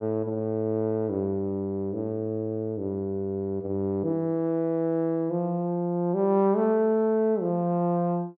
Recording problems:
none

